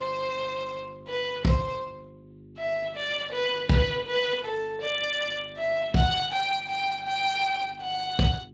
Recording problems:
lossy compression; Speex, log-spectral distance 4 dB, nothing above 7.3 kHz
hum; 50 Hz, harmonics up to 400 Hz, SNR 22 dB

